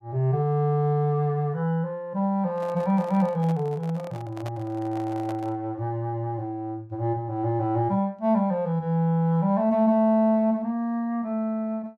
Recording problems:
microphone handling noise; from 2.5 to 5.5 s; peak -9 dB vs average level

